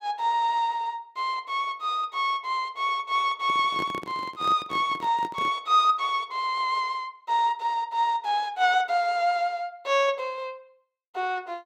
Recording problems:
microphone handling noise; from 3.5 to 5.5 s; peak -6 dB vs average level

